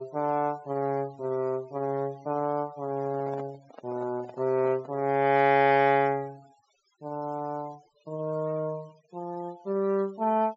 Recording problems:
treble missing; nothing above 7.7 kHz
denoising artefacts; signal-to-artefact ratio 27 dB
microphone handling noise; from 3 to 5 s; peak -11 dB vs average level

